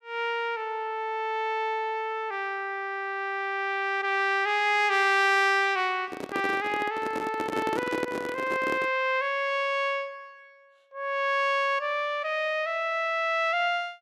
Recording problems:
handling noise; from 6 to 9 s; peak -1 dB vs average level

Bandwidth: 14.5 kHz